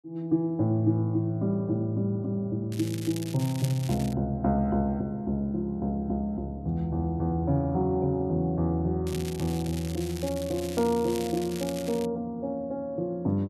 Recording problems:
crackle; from 2.5 to 4 s and from 9 to 12 s; loose cable, SNR 14 dB

